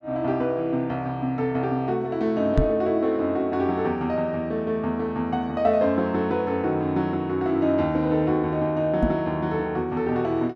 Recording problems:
microphone bump; at 2.5 s and at 9 s; peak +6 dB vs average level

